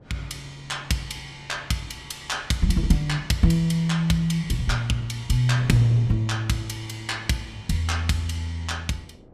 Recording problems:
wind on the microphone; below 400 Hz, SNR 22 dB

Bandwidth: 15 kHz